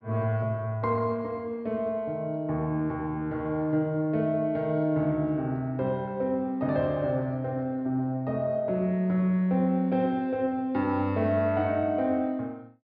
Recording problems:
low-pass filter; nothing above 5.5 kHz

